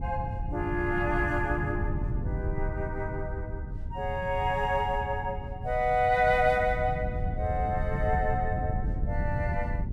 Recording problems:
wind noise; below 130 Hz, SNR 5 dB

